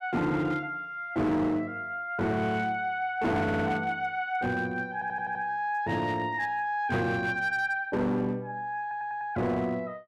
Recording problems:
distorted audio; hard clipping, signal-to-distortion ratio 11 dB
audio stuttering; at 3.5 s, at 5 s and at 9 s

